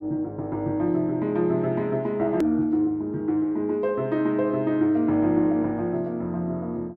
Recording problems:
click at an edit; at 2.5 s

